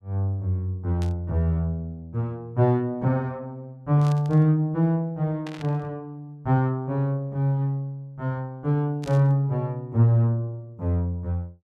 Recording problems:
static burst; 4 times, first at 1 s; peak -12 dB vs average level

